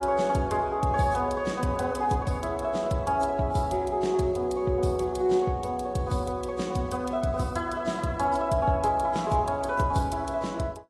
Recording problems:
codec artefacts; AAC, log-spectral distance 2 dB, nothing above 12 kHz

